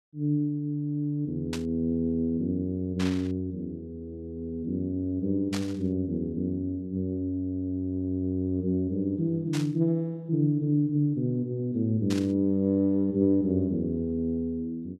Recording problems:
static burst; 5 times, first at 1.5 s; peak -3 dB vs average level

